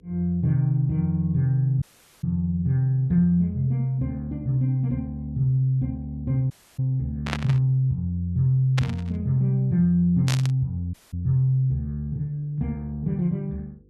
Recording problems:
mains hum; 50 Hz, harmonics up to 500 Hz, SNR 32 dB
audio cutting out; at 2 s, at 6.5 s and at 11 s
static burst; at 7.5 s, at 9 s and at 10 s; peak 0 dB vs average level

